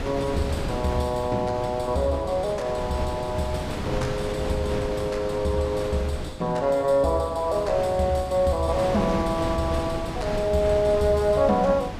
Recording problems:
wind on the microphone; below 680 Hz, SNR 8 dB

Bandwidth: 14.5 kHz